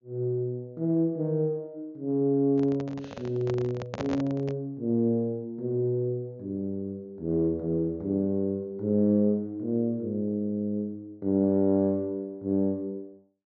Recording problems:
treble cut off; nothing above 7.1 kHz
microphone handling noise; from 2.5 to 4.5 s; peak -2 dB vs average level

